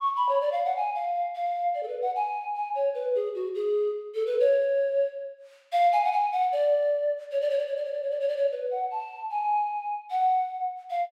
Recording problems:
none

